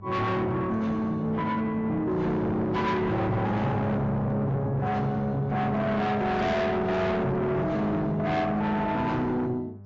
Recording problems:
codec artefacts; AAC, log-spectral distance 2 dB, nothing above 7.3 kHz
distortion; soft clipping, signal-to-distortion ratio 7 dB
hum; 50 Hz, harmonics up to 600 Hz, SNR 19 dB

